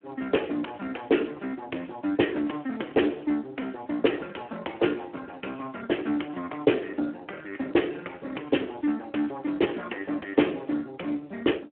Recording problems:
phone line; 240 Hz to 3.2 kHz, Speex

